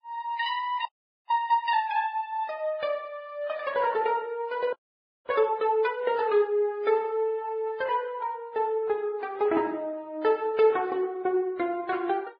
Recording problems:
lossy compression; MP3, then Vorbis, log-spectral distance 2 dB, nothing above 4.6 kHz
audio freezing; at 1 s and at 4.5 s for 0.5 s

